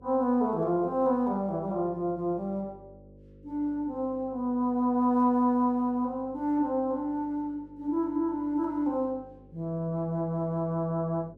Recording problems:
hum; 50 Hz, harmonics up to 550 Hz, SNR 25 dB

